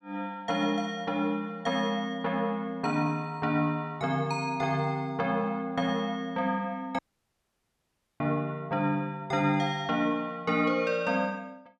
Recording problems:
dropout; at 7 s for 1 s

